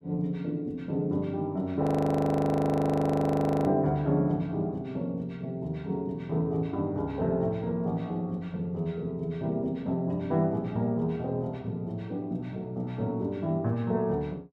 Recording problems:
audio freezing; at 2 s for 2 s

